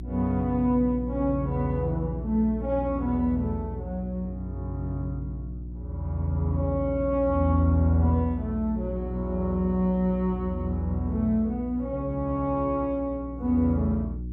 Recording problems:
mains hum; 60 Hz, harmonics up to 360 Hz, SNR 9 dB

